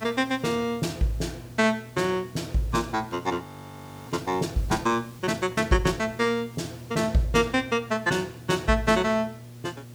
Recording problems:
mains hum; 60 Hz, harmonics up to 600 Hz, SNR 19 dB
background hiss; SNR 24 dB
audio freezing; at 3.5 s for 0.5 s

